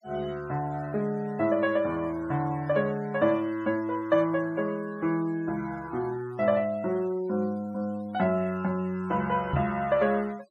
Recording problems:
denoising artefacts; signal-to-artefact ratio 24 dB
knock on the microphone; at 9.5 s; peak +3 dB vs average level

